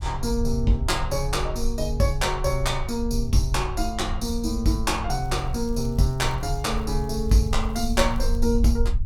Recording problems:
low-frequency rumble; below 64 Hz, SNR 5 dB
crackle; from 5 to 8.5 s; loose cable, SNR 30 dB

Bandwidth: 17 kHz